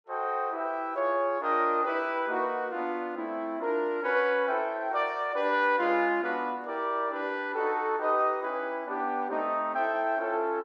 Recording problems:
none

